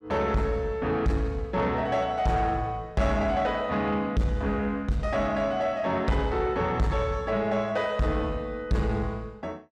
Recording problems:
distortion; soft clipping, signal-to-distortion ratio 11 dB

